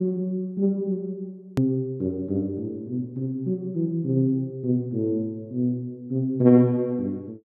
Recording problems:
click at an edit; at 1.5 s

